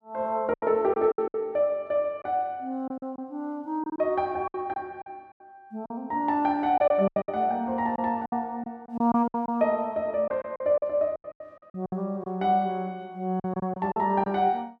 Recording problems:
lost packets; 11% of the sound replaced, filled with silence

